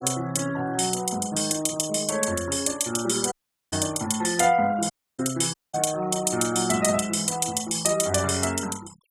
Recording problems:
noise reduction artefacts; signal-to-artefact ratio 19 dB
dropout; at 3.5 s, at 5 s and at 5.5 s

